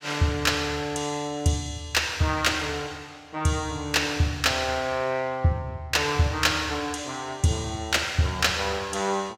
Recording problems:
none

